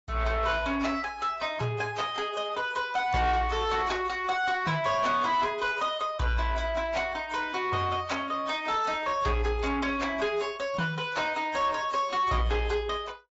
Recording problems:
treble cut off; nothing above 7.6 kHz
lossy compression; AAC, log-spectral distance 3 dB
distorted audio; soft clipping, signal-to-distortion ratio 11 dB

